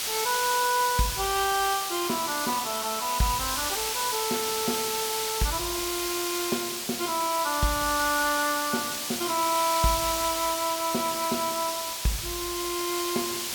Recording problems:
hiss; slope +2 dB per octave, SNR 1 dB

